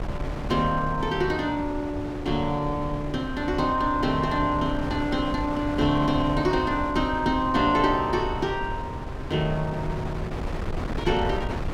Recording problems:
wind on the microphone; below 360 Hz, SNR 8 dB

